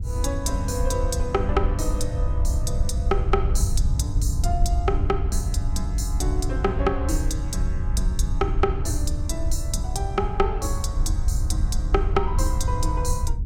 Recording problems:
rumble; below 78 Hz, SNR -2 dB

